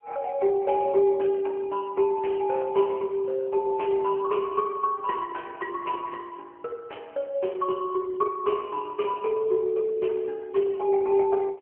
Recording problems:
phone line; 300 Hz to 2.2 kHz, AMR-NB

